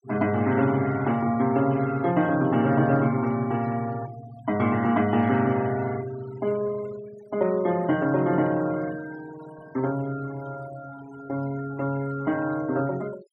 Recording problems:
noise reduction artefacts; signal-to-artefact ratio 20 dB

